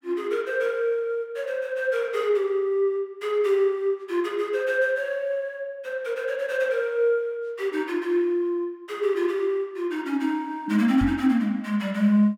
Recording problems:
microphone bump; at 11 s; peak -1 dB vs average level

